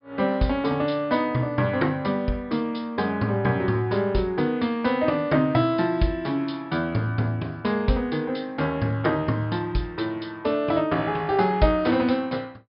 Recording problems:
treble missing; nothing above 5.5 kHz

